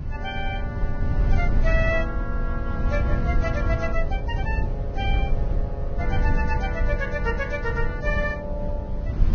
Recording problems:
lossy compression; Vorbis, log-spectral distance 2 dB, nothing above 6.5 kHz
low-frequency rumble; below 88 Hz, SNR -3 dB

